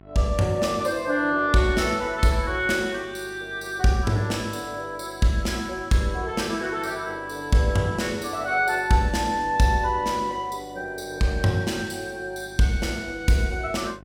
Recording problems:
mains hum; 50 Hz, harmonics up to 1.5 kHz, SNR 24 dB

